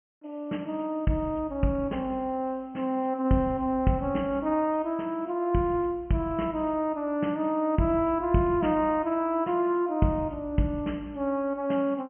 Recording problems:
low-pass filter; nothing above 3 kHz

